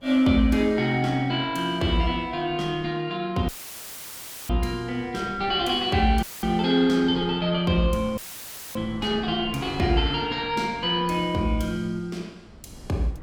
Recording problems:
wind noise; below 310 Hz, SNR 20 dB
dropout; at 3.5 s for 1 s, at 6 s and at 8 s for 0.5 s; filled with static

